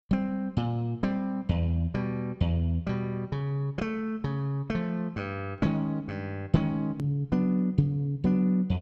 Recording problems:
click at an edit; at 7 s

